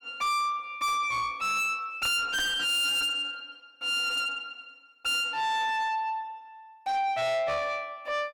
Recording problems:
distorted audio; soft clipping, signal-to-distortion ratio 7 dB

